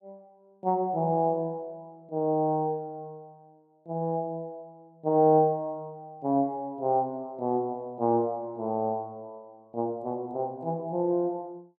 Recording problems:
none

